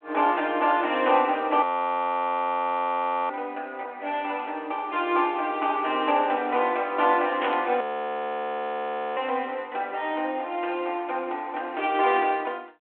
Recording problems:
phone line; 190 Hz to 3.4 kHz, G.726
audio freezing; at 1.5 s for 1.5 s and at 8 s for 1.5 s
static burst; at 7.5 s; peak -3 dB vs average level

